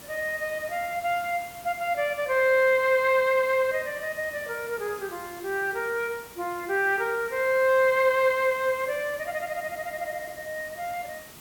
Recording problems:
background hiss; slope -3 dB per octave, SNR 18 dB

